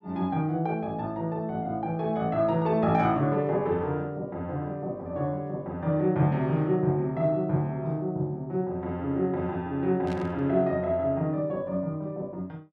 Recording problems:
burst of static; at 10 s; peak -12 dB vs average level

